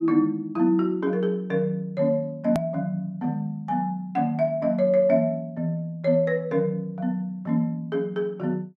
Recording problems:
click at an edit; at 2.5 s

